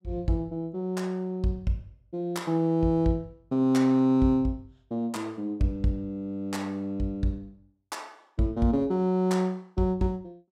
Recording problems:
none

